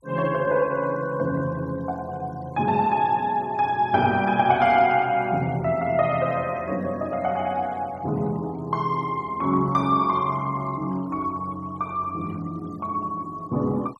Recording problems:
denoising artefacts; signal-to-artefact ratio 25 dB

